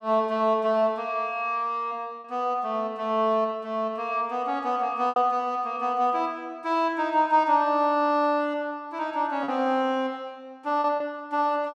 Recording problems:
lost packets; 2% of the sound replaced, filled with repeated pitch periods

